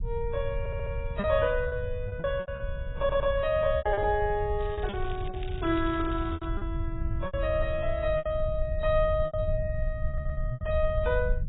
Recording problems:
codec artefacts; AAC, log-spectral distance 2 dB, nothing above 3.2 kHz
rumble; below 90 Hz, SNR 5 dB
lost packets; 9% of the sound replaced, filled with repeated pitch periods
audio stuttering; at 0.5 s, at 3 s and at 10 s
crackle; from 4.5 to 6.5 s; loose cable, SNR 20 dB

